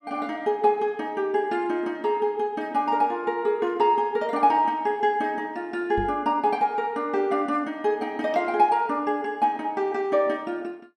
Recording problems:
microphone bump; at 6 s; peak -5 dB vs average level

